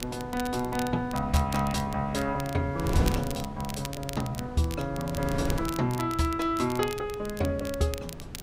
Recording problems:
wind noise; below 290 Hz, SNR 8 dB
crackle; vinyl, SNR 13 dB

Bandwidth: 15.5 kHz